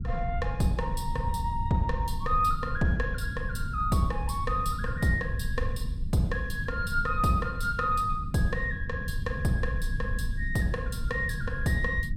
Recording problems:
low-frequency rumble; below 110 Hz, SNR 5 dB

